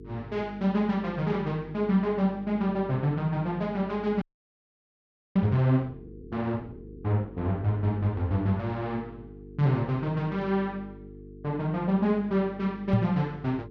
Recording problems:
hum; 50 Hz, harmonics up to 450 Hz, SNR 17 dB
audio freezing; at 4 s for 1 s
microphone thump; at 13 s; peak +6 dB vs average level

